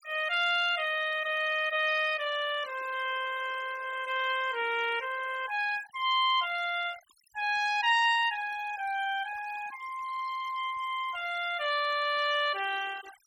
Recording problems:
noise reduction artefacts; signal-to-artefact ratio 17 dB

